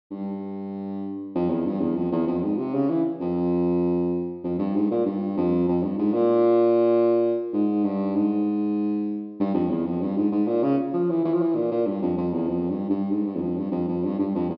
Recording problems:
treble missing; nothing above 5.5 kHz

